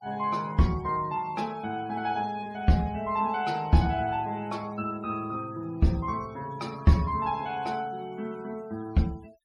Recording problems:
denoising artefacts; signal-to-artefact ratio 25 dB

